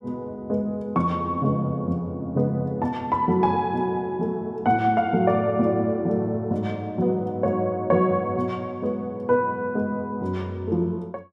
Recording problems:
none

